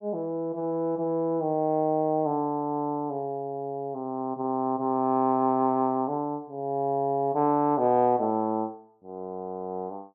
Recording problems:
none

